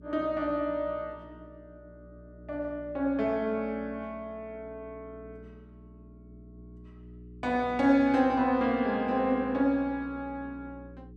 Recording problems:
hum; 60 Hz, harmonics up to 420 Hz, SNR 21 dB

